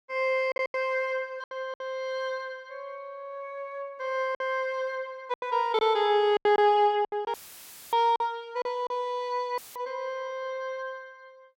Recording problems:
packet loss; 7% of the sound replaced, filled with silence
dropout; at 7.5 s for 0.5 s and at 9.5 s; filled with static

